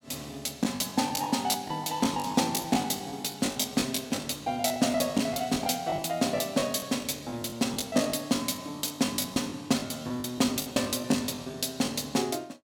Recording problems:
lost packets; 16% of the sound replaced, filled with the last packet

